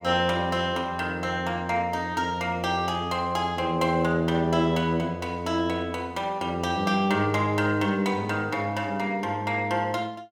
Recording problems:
none

